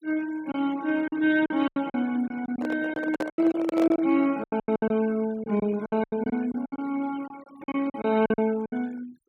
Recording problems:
noise reduction artefacts; signal-to-artefact ratio 23 dB
lost packets; 15% of the sound replaced, filled with silence
handling noise; from 2.5 to 4 s; peak -1 dB vs average level

